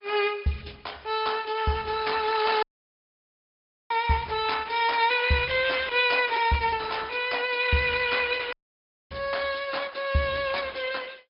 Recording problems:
treble missing; nothing above 5.2 kHz
lossy compression; Opus, log-spectral distance 5 dB
dropout; at 2.5 s for 1.5 s and at 8.5 s for 0.5 s

